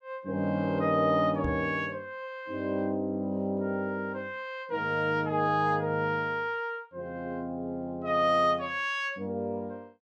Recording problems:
microphone thump; at 1.5 s; peak -2 dB vs average level

